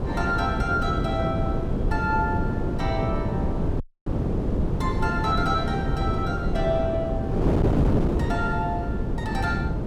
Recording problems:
low-frequency rumble; below 170 Hz, SNR 5 dB
wind noise; below 370 Hz, SNR -1 dB
audio cutting out; at 4 s

